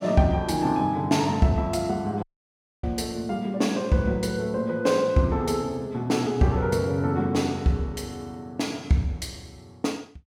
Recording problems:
audio cutting out; at 2 s for 0.5 s

